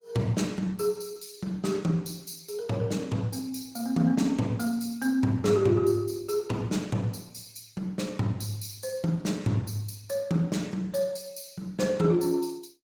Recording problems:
codec artefacts; Opus, log-spectral distance 4 dB, nothing above 19 kHz

